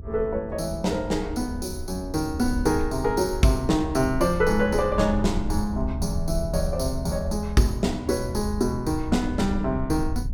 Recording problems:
rumble; below 76 Hz, SNR 8 dB

